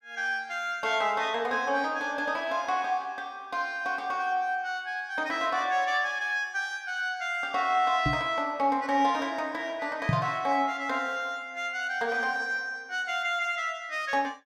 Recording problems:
microphone bump; at 8 s and at 10 s; peak +5 dB vs average level

